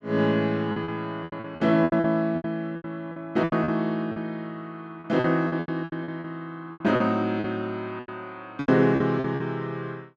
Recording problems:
packet loss; 15% of the sound replaced, filled with repeated pitch periods

